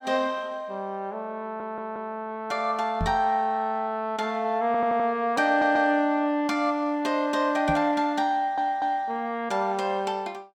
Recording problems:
audio stuttering; 4 times, first at 1.5 s
microphone thump; at 3 s and at 7.5 s; peak 0 dB vs average level

